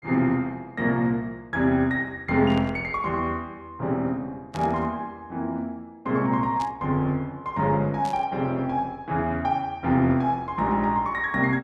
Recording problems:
burst of static; 4 times, first at 2.5 s; peak -11 dB vs average level

